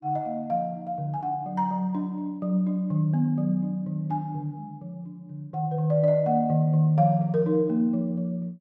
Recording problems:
none

